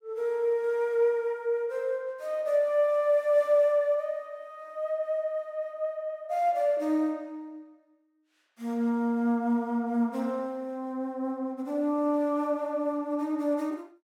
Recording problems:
none

